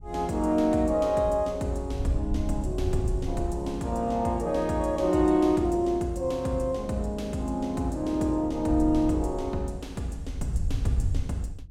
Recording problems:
wind noise; below 90 Hz, SNR 8 dB

